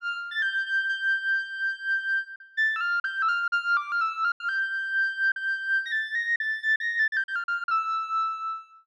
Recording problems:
packet loss; 6% of the sound replaced, filled with silence

